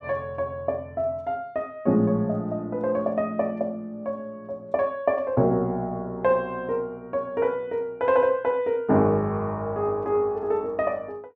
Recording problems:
none

